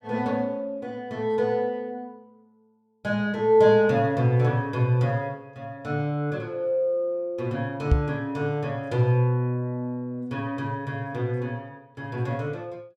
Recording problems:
knock on the microphone; at 8 s; peak +8 dB vs average level

